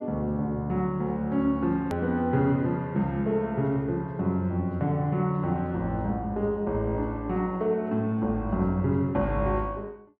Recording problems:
edit click; at 2 s

